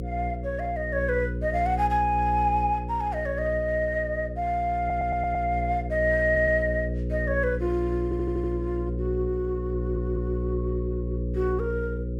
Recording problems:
electrical hum; 60 Hz, harmonics up to 540 Hz, SNR 4 dB
stutter; 4 times, first at 5 s

